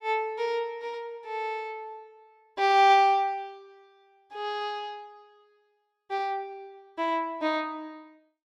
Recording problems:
none

